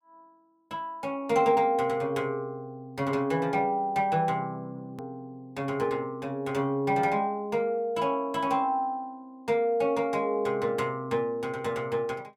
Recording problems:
click at an edit; at 5 s

